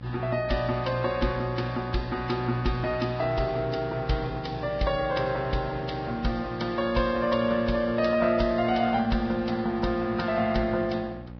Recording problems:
lossy compression; Vorbis, log-spectral distance 3 dB, nothing above 5.2 kHz
electrical hum; 60 Hz, harmonics up to 1.1 kHz, SNR 15 dB

